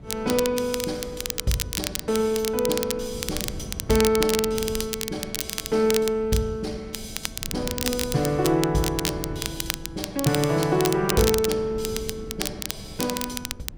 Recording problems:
wind noise; below 190 Hz, SNR 16 dB
crackling; vinyl, SNR 5 dB

